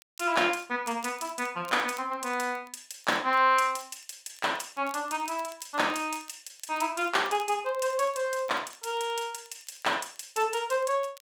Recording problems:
crackle; vinyl, SNR 26 dB

